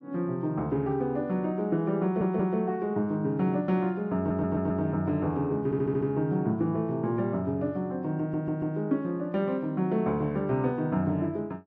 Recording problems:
audio stuttering; 4 times, first at 2 s

